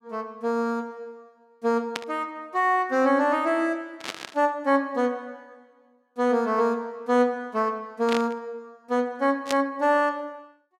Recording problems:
static burst; 4 times, first at 2 s; peak -1 dB vs average level

